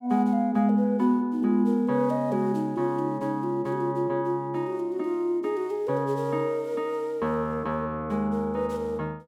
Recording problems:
none

